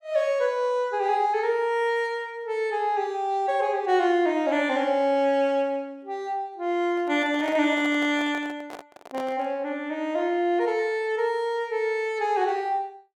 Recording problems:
microphone handling noise; from 7 to 9.5 s; peak -8 dB vs average level

